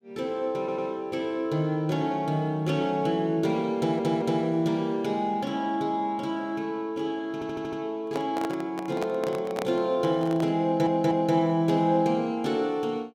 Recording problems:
audio stuttering; 4 times, first at 0.5 s
microphone handling noise; from 8 to 11 s; peak -2 dB vs average level

